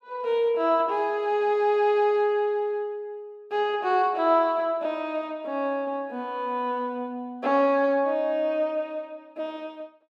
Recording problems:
none

